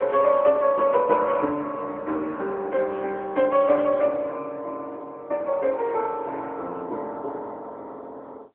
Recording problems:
telephone audio; 300 Hz to 3.2 kHz, AMR-NB

